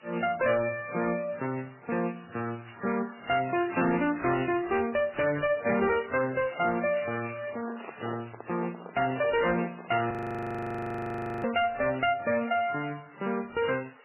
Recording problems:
codec artefacts; MP3, then MP3, log-spectral distance 17 dB, nothing above 2.4 kHz
distortion; hard clipping, signal-to-distortion ratio 11 dB
background hiss; SNR 25 dB
crackling; from 2.5 to 5 s, from 5.5 to 8 s and at 9.5 s; loose cable, SNR 17 dB
microphone handling noise; from 7.5 to 10 s; peak -7 dB vs average level
audio freezing; at 10 s for 1.5 s

